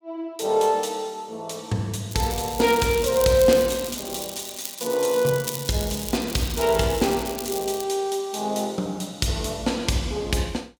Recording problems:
crackling; from 2 to 8 s; loose cable, SNR 10 dB

